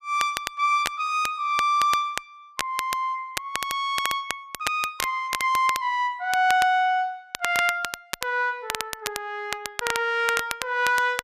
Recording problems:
crackling; vinyl, SNR 8 dB

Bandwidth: 14.5 kHz